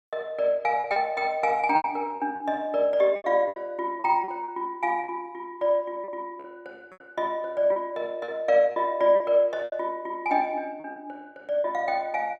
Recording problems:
packet loss; 9% of the sound replaced, filled with repeated pitch periods

